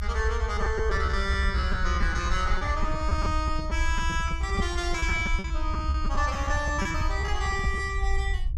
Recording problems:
rumble; below 68 Hz, SNR 1 dB
lost packets; 14% of the sound replaced, filled with repeated pitch periods

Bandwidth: 14.5 kHz